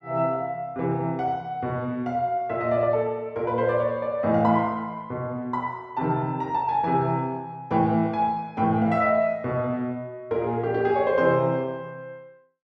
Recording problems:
none

